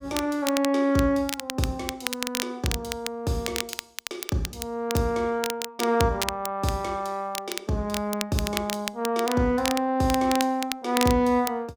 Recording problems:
crackle; vinyl, SNR 7 dB

